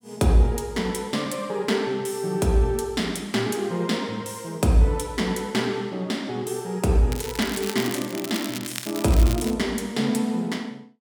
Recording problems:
crackling; from 7 to 9.5 s; loose cable, SNR 10 dB

